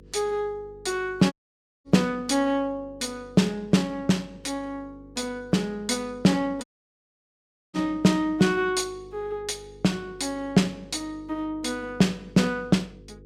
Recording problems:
electrical hum; 50 Hz, harmonics up to 500 Hz, SNR 24 dB
audio cutting out; at 1.5 s for 0.5 s and at 6.5 s for 1 s

